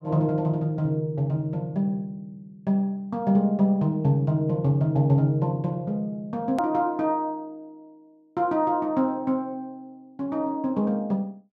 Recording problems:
click at an edit; at 6.5 s

